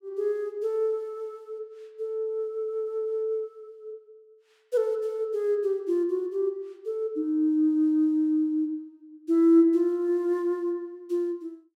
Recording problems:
none

